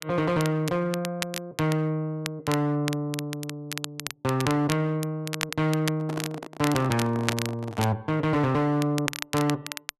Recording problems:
distortion; hard clipping, signal-to-distortion ratio 11 dB
crackling; vinyl, SNR 9 dB
handling noise; from 6 to 8 s; peak -3 dB vs average level

